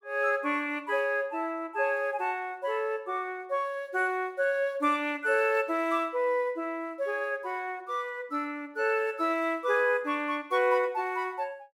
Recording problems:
none

